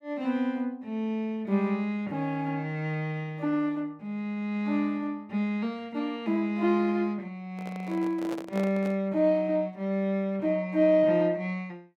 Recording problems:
handling noise; from 7.5 to 9 s; peak -6 dB vs average level

